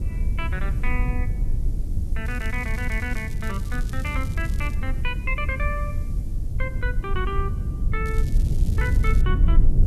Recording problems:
background hiss; SNR 25 dB
rumble; below 80 Hz, SNR -5 dB
crackle; from 2.5 to 4.5 s and from 8 to 9 s; loose cable, SNR 15 dB

